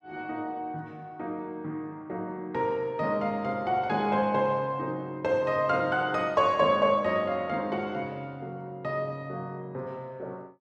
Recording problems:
none

